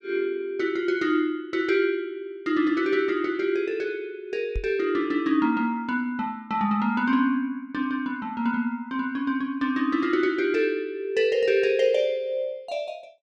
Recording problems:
knock on the microphone; at 4.5 s; peak -2 dB vs average level

